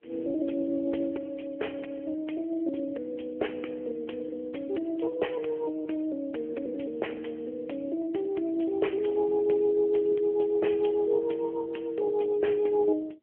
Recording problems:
phone line; 280 Hz to 3.3 kHz, AMR-NB

